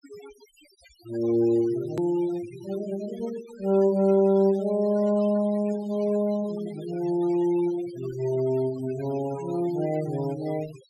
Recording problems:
denoising artefacts; signal-to-artefact ratio 20 dB
edit click; at 2 s

